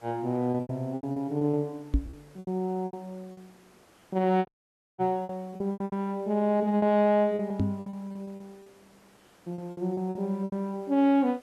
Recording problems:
hiss; slope -5 dB per octave, SNR 30 dB
packet loss; 16% of the sound replaced, filled with repeated pitch periods
microphone bump; at 2 s, at 5 s and at 7.5 s; peak +6 dB vs average level
audio cutting out; at 4.5 s for 0.5 s

